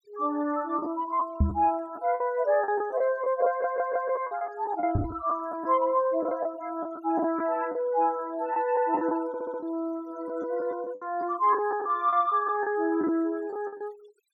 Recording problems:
denoising artefacts; signal-to-artefact ratio 25 dB
packet loss; 9% of the sound replaced, filled with the last packet
microphone thump; at 1.5 s and at 5 s; peak +7 dB vs average level
audio stuttering; at 3.5 s and at 9.5 s

